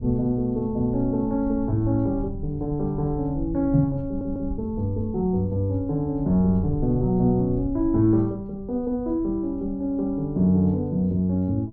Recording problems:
rumble; below 100 Hz, SNR 13 dB
audio stuttering; at 4 s

